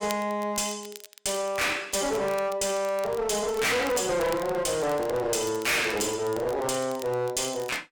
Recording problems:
distorted audio; hard clipping, uneven, signal-to-distortion ratio 5 dB
crackling; vinyl, SNR 19 dB

